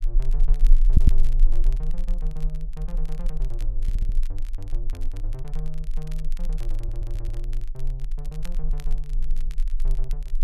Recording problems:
low-frequency rumble; below 32 Hz, strongest tone 20 Hz, SNR -11 dB
crackle; vinyl, SNR 13 dB
stutter; at 1 s, at 4 s and at 7 s

